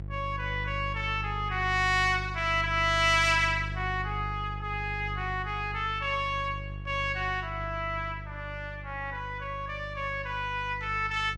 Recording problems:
electrical hum; 50 Hz, harmonics up to 500 Hz, SNR 9 dB

